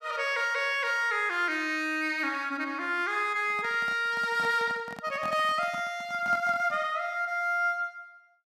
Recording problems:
handling noise; from 3.5 to 7 s; peak -9 dB vs average level

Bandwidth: 14.5 kHz